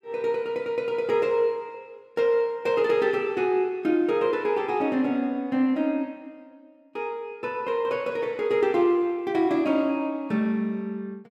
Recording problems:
none

